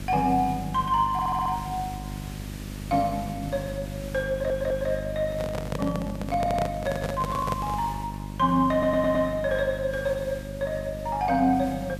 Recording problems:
hum; 50 Hz, harmonics up to 650 Hz, SNR 10 dB
background hiss; slope -2 dB per octave, SNR 17 dB
audio stuttering; 4 times, first at 1 s
handling noise; from 5.5 to 8 s; peak 0 dB vs average level

